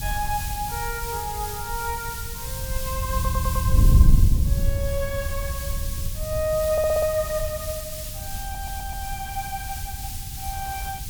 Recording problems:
background hiss; slope +6 dB per octave, SNR 5 dB
wind noise; below 94 Hz, SNR -2 dB
audio stuttering; at 3 s, at 6.5 s and at 8.5 s

